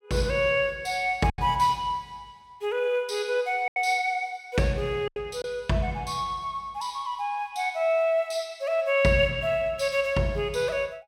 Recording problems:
packet loss; 2% of the sound replaced, filled with silence

